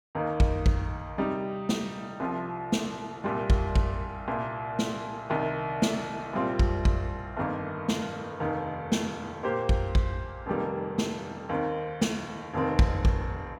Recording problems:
none

